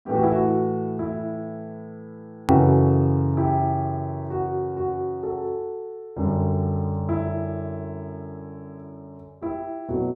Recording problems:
edit click; at 2.5 s

